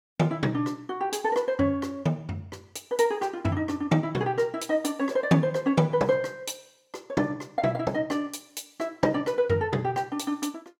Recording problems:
none

